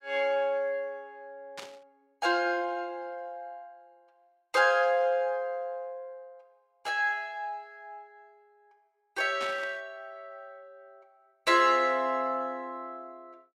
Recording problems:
burst of static; at 1.5 s and at 9.5 s; peak -7 dB vs average level

